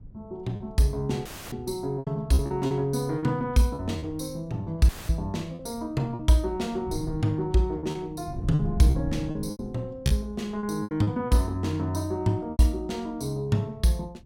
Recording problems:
wind on the microphone; below 160 Hz, SNR 13 dB
lost packets; 8% of the sound replaced, filled with repeated pitch periods
audio cutting out; at 1.5 s and at 5 s; filled with static

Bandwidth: 16.5 kHz